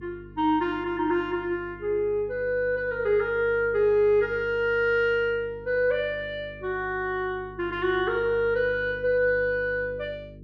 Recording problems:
hum; 50 Hz, harmonics up to 450 Hz, SNR 20 dB

